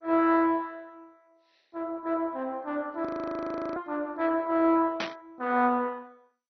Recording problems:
lossy compression; MP2, log-spectral distance 3 dB
static burst; at 3 s and at 5 s; peak 0 dB vs average level
frozen audio; at 3 s for 0.5 s

